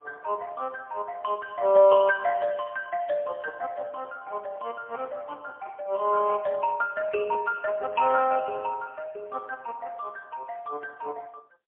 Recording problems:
telephone audio; 300 Hz to 2.6 kHz, AMR-NB, then MP3

